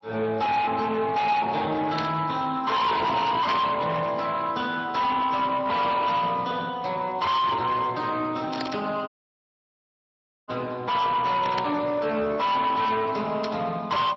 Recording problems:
lossy codec; MP3, then Speex, log-spectral distance 4 dB
distorted audio; hard clipping, uneven, signal-to-distortion ratio 6 dB
static burst; 5 times, first at 2 s; peak -2 dB vs average level
audio cutting out; at 9 s for 1.5 s

